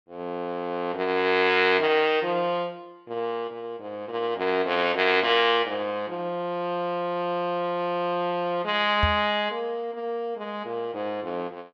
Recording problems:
knock on the microphone; at 9 s; peak +3 dB vs average level

